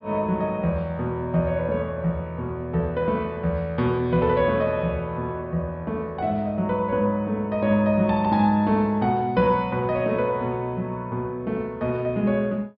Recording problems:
treble missing; nothing above 5.1 kHz

